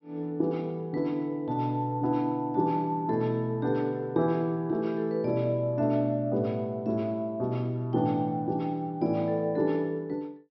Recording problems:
treble cut off; nothing above 5.7 kHz

